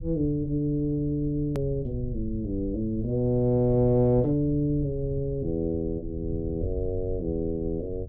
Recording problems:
rumble; below 92 Hz, SNR 12 dB
click at an edit; at 1.5 s

